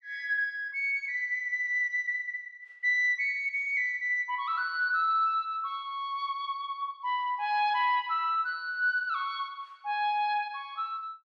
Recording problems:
none

